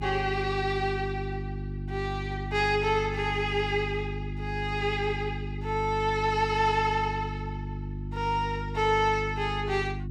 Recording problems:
electrical hum; 50 Hz, harmonics up to 350 Hz, SNR 7 dB

